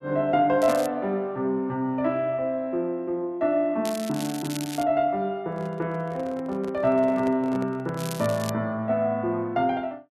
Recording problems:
crackling; at 0.5 s, at 4 s and at 8 s; loose cable, SNR 13 dB
microphone handling noise; from 5.5 to 8 s; peak -8 dB vs average level

